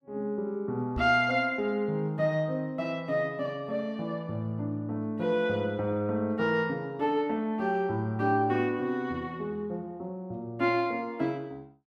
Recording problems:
microphone thump; at 1 s; peak -1 dB vs average level

